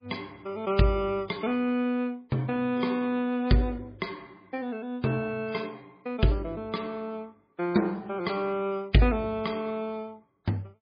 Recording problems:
lossy codec; MP3, log-spectral distance 2 dB, nothing above 4.6 kHz

